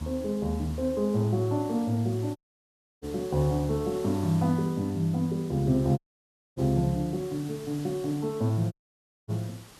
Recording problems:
hiss; slope -2 dB per octave, SNR 20 dB
audio cutting out; at 2.5 s for 0.5 s, at 6 s for 0.5 s and at 8.5 s for 0.5 s

